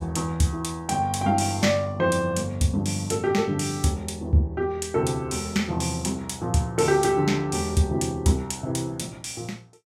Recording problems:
none

